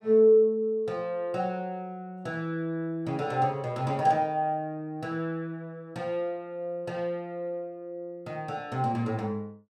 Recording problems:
none

